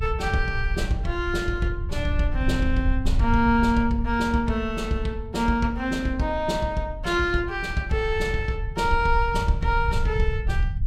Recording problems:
low-frequency rumble; below 76 Hz, SNR 6 dB

